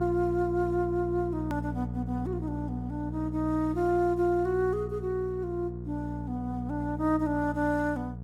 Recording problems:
hum; 60 Hz, harmonics up to 720 Hz, SNR 7 dB
click at an edit; at 1.5 s

